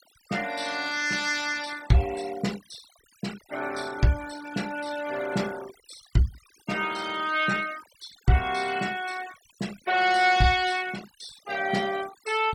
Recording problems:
denoising artefacts; signal-to-artefact ratio 17 dB

